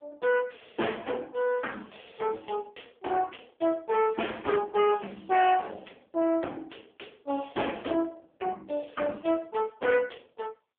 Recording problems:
phone line; 240 Hz to 3.4 kHz, AMR-NB
distorted audio; soft clipping, signal-to-distortion ratio 6 dB

